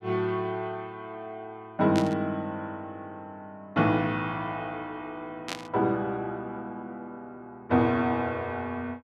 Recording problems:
static burst; at 2 s and at 5.5 s; peak 0 dB vs average level

